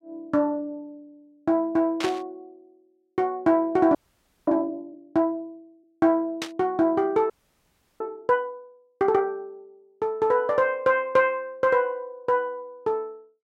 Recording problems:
static burst; at 2 s and at 6.5 s; peak -2 dB vs average level
frozen audio; at 4 s for 0.5 s and at 7.5 s for 0.5 s

